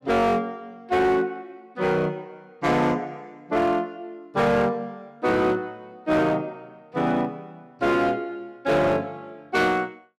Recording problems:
distortion; hard clipping, signal-to-distortion ratio 11 dB

